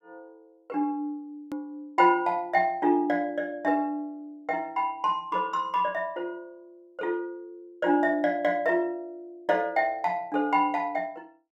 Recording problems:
click at an edit; at 1.5 s

